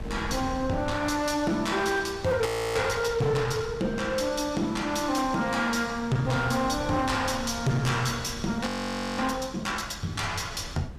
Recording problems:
distorted audio; hard clipping, uneven, signal-to-distortion ratio 10 dB
wind on the microphone; below 200 Hz, SNR 15 dB
audio freezing; at 2.5 s and at 8.5 s for 0.5 s

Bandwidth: 14.5 kHz